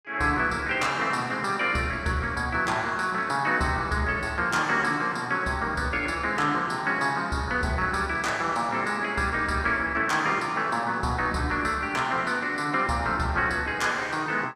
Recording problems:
none

